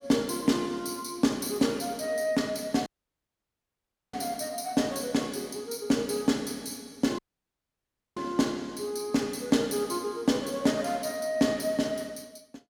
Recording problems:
dropout; at 3 s for 1.5 s and at 7 s for 1 s

